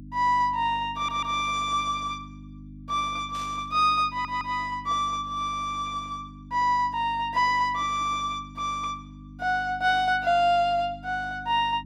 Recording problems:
mains hum; 50 Hz, harmonics up to 300 Hz, SNR 18 dB
stutter; at 1 s and at 4 s
static burst; at 3.5 s; peak -15 dB vs average level

